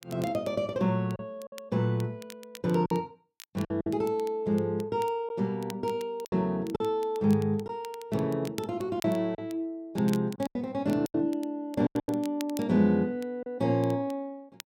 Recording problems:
crackle; vinyl, SNR 21 dB
lost packets; 6% of the sound replaced, filled with silence

